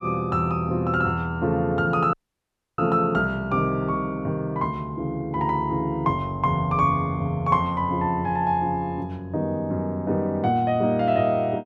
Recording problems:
dropout; at 2 s for 0.5 s

